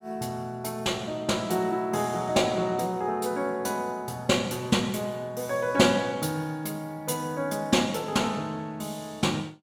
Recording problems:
none

